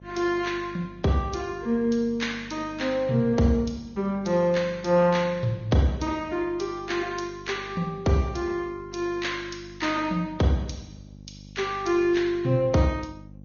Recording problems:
lossy codec; MP2, then Vorbis, log-spectral distance 3 dB, nothing above 6.7 kHz
hum; 50 Hz, harmonics up to 600 Hz, SNR 21 dB

